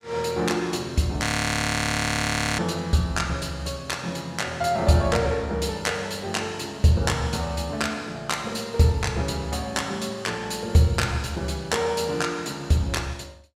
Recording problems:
frozen audio; at 1.5 s for 1.5 s

